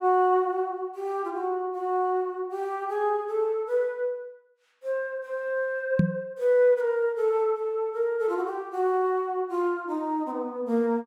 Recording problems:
knock on the microphone; at 6 s; peak +9 dB vs average level

